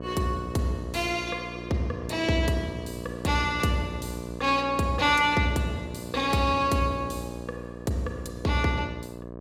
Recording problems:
electrical hum; 60 Hz, harmonics up to 1.3 kHz, SNR 11 dB

